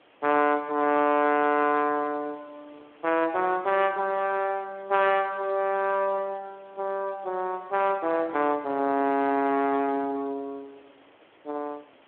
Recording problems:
phone line; 220 Hz to 3.5 kHz, Speex
background hiss; SNR 30 dB

